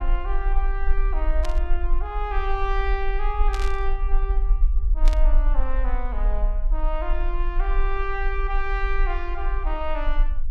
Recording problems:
rumble; below 40 Hz, strongest tone 24 Hz, SNR -4 dB
static burst; at 1.5 s, at 3.5 s and at 5 s; peak -1 dB vs average level

